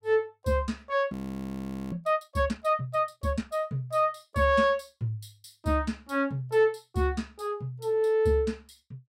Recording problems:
audio freezing; at 1 s for 1 s

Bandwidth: 16 kHz